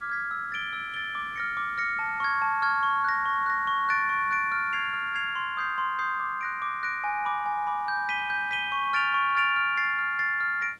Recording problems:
background hiss; slope -4 dB per octave, SNR 30 dB

